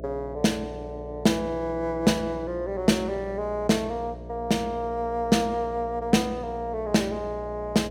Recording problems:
hum; 60 Hz, harmonics up to 660 Hz, SNR 13 dB

